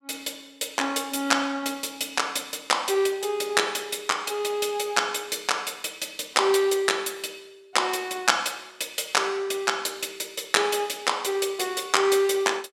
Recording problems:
none

